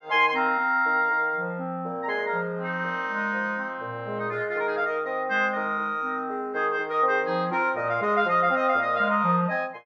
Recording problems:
none

